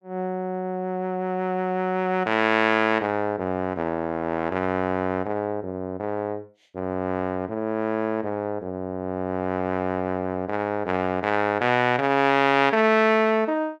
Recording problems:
none

